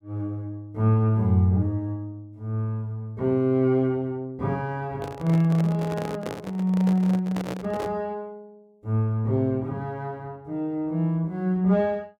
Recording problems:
handling noise; from 5 to 8 s; peak -4 dB vs average level

